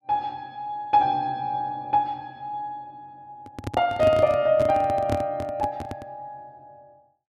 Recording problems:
microphone handling noise; from 3.5 to 6 s; peak +1 dB vs average level

